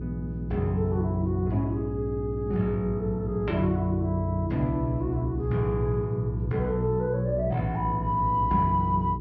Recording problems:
low-pass filter; nothing above 6 kHz
hum; 60 Hz, harmonics up to 420 Hz, SNR 8 dB

